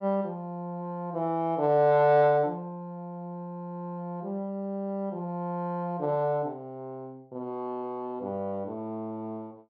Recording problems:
none

